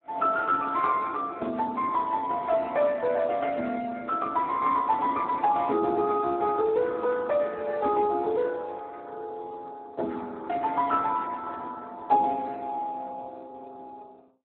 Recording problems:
telephone audio; 220 Hz to 2.8 kHz, Speex
static burst; at 1.5 s; peak -20 dB vs average level

